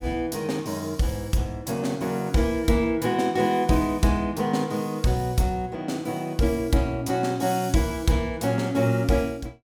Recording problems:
none

